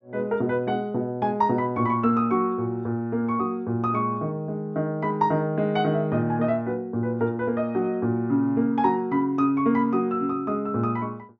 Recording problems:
low-pass filter; nothing above 8 kHz

